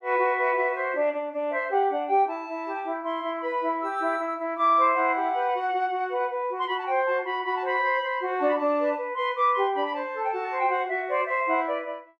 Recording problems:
none

